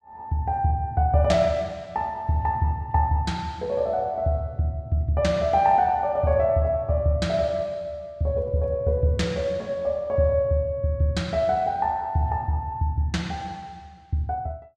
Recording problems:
none

